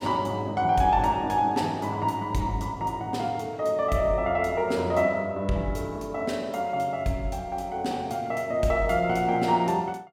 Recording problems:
none

